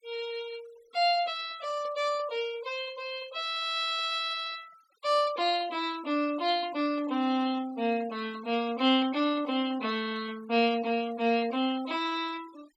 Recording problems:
noise reduction artefacts; signal-to-artefact ratio 22 dB

